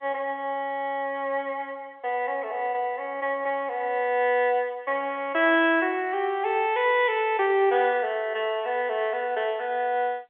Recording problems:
telephone audio; 300 Hz to 3.4 kHz, G.711

